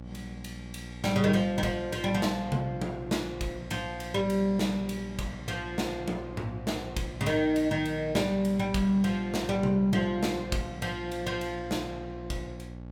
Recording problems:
electrical hum; 60 Hz, harmonics up to 1.1 kHz, SNR 13 dB

